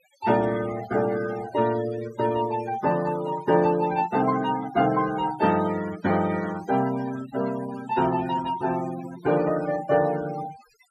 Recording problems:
noise reduction artefacts; signal-to-artefact ratio 14 dB

